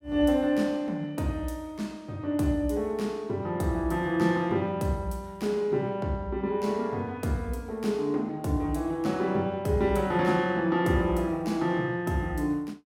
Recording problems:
none

